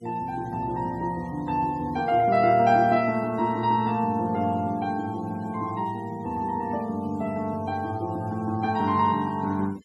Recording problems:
noise reduction artefacts; signal-to-artefact ratio 26 dB

